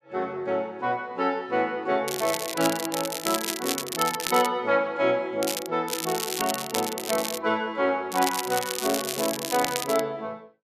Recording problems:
crackling; 4 times, first at 2 s; loose cable, SNR 4 dB

